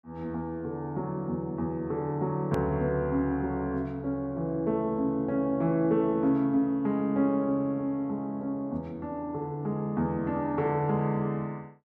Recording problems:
edit click; at 2.5 s

